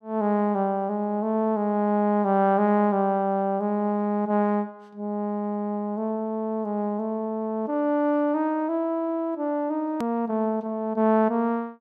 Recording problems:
edit click; at 10 s

